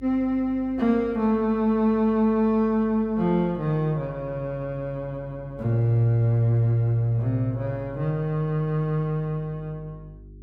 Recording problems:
hum; 50 Hz, harmonics up to 400 Hz, SNR 22 dB

